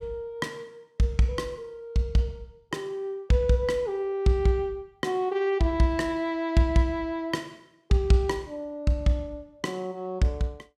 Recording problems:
none

